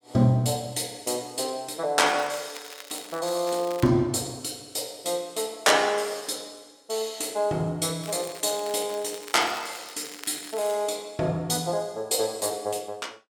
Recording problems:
crackling; from 2 to 4 s and from 8 to 11 s; loose cable, SNR 17 dB

